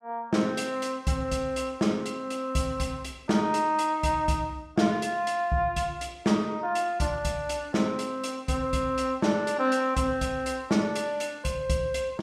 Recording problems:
none

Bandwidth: 14.5 kHz